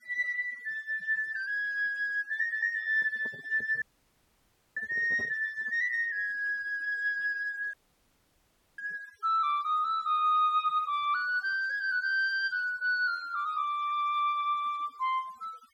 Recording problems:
denoising artefacts; signal-to-artefact ratio 26 dB
handling noise; from 3 to 6 s; peak -11 dB vs average level
dropout; at 4 s for 1 s and at 7.5 s for 1 s

